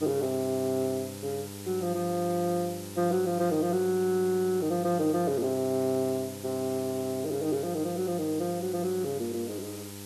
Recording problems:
hum; 50 Hz, harmonics up to 1.4 kHz, SNR 14 dB
hiss; slope +2 dB per octave, SNR 14 dB

